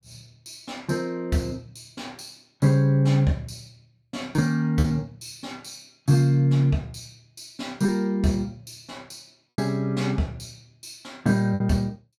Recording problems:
lost packets; 3% of the sound replaced, filled with repeated pitch periods

